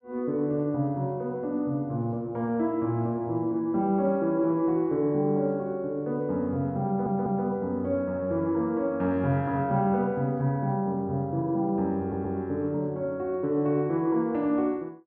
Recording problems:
stutter; at 7 s and at 12 s

